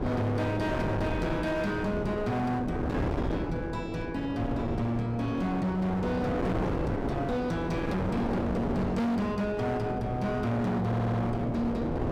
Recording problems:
distortion; hard clipping, uneven, signal-to-distortion ratio 6 dB
wind on the microphone; below 500 Hz, SNR 3 dB
stutter; at 11 s

